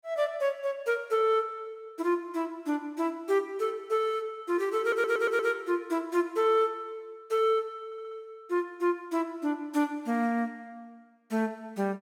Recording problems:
audio stuttering; at 5 s and at 8 s

